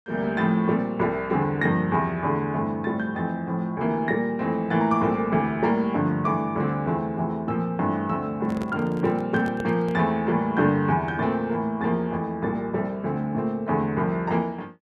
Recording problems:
microphone handling noise; from 8.5 to 10 s; peak -6 dB vs average level

